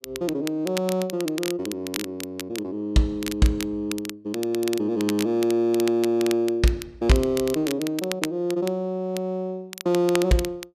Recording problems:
crackle; vinyl, SNR 11 dB

